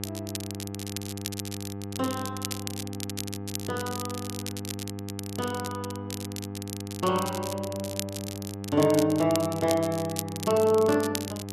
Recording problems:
hum; 50 Hz, harmonics up to 1.3 kHz, SNR 9 dB
crackling; vinyl, SNR 10 dB

